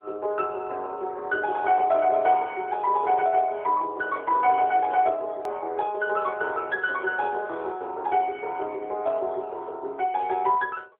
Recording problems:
phone line; 320 Hz to 3.7 kHz, AMR-NB
hard cut with a click; at 5.5 s

